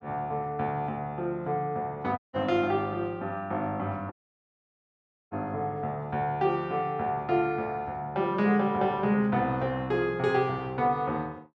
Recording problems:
dropout; at 2 s and at 4 s for 1 s

